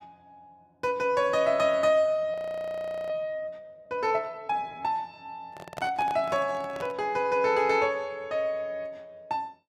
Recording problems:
audio freezing; at 2.5 s for 1 s
microphone handling noise; from 5.5 to 7 s; peak -5 dB vs average level

